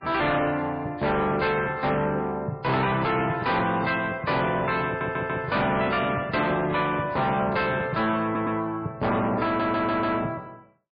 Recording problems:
lossy compression; MP3, log-spectral distance 3 dB, nothing above 4.6 kHz
distorted audio; soft clipping, signal-to-distortion ratio 8 dB
audio stuttering; at 5 s, at 8 s and at 9.5 s
handling noise; from 5.5 to 8 s; peak -7 dB vs average level

